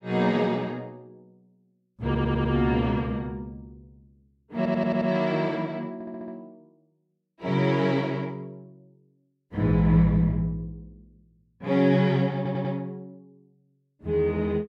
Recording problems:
stutter; 4 times, first at 2 s

